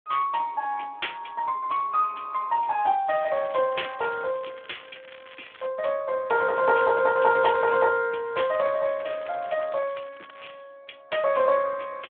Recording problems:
telephone audio; 340 Hz to 3.5 kHz, Speex
crackle; from 3 to 5.5 s, from 6.5 to 8 s and from 8.5 to 11 s; loose cable, SNR 22 dB

